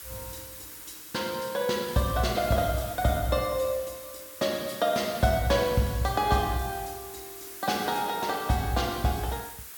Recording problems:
hiss; SNR 13 dB

